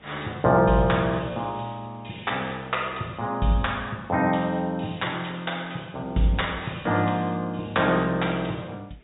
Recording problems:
low-pass filter; nothing above 4 kHz
hiss; SNR 30 dB

